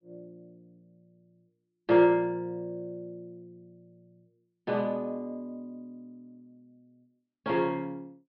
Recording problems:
treble missing; nothing above 5.5 kHz

